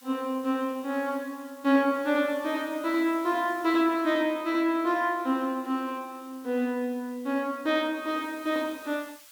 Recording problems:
background hiss; slope +3 dB per octave, SNR 24 dB

